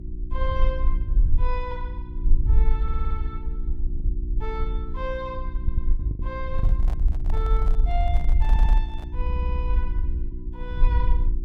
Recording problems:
hum; 60 Hz, harmonics up to 360 Hz, SNR 5 dB
rumble; below 52 Hz, SNR -9 dB
packet loss; 2% of the sound replaced, filled with the last packet
audio stuttering; 4 times, first at 3 s
handling noise; from 6.5 to 9 s; peak -3 dB vs average level

